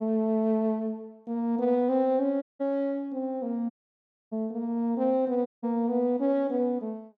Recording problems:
dropout; at 2.5 s, at 3.5 s for 0.5 s and at 5.5 s

